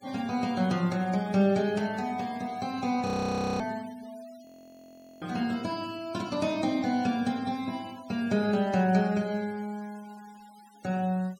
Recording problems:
noise reduction artefacts; signal-to-artefact ratio 23 dB
frozen audio; at 3 s for 0.5 s and at 4.5 s for 1 s

